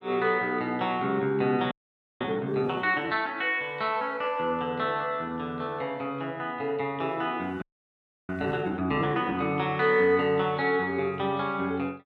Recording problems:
frozen audio; at 1.5 s and at 7.5 s for 0.5 s

